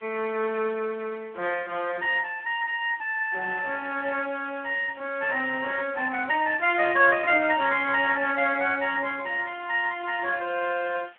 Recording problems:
phone line; 260 Hz to 3.3 kHz, Speex
background hiss; SNR 28 dB
burst of static; at 1.5 s, at 4 s and at 5.5 s; peak -18 dB vs average level

